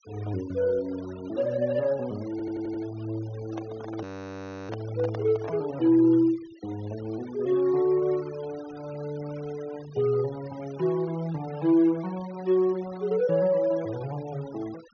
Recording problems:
low-pass filter; nothing above 6.5 kHz
denoising artefacts; signal-to-artefact ratio 21 dB
audio stuttering; at 2.5 s
handling noise; from 3.5 to 5.5 s; peak -7 dB vs average level
audio freezing; at 4 s for 0.5 s

